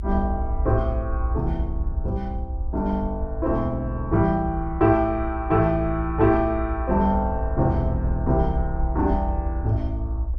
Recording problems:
rumble; below 68 Hz, strongest tone 58 Hz, SNR 5 dB

